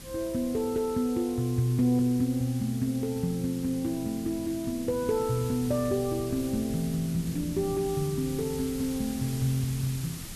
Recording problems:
background hiss; slope +1 dB per octave, SNR 14 dB
wind on the microphone; below 180 Hz, SNR 17 dB

